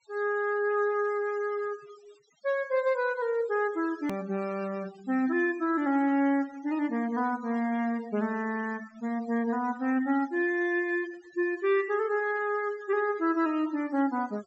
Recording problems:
treble missing; nothing above 7.9 kHz
denoising artefacts; signal-to-artefact ratio 21 dB
edit click; at 4 s

